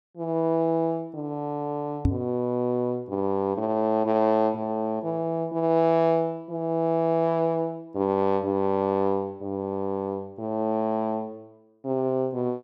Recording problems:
microphone bump; at 2 s; peak +6 dB vs average level

